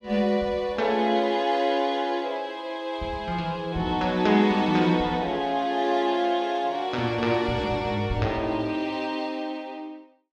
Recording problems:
none

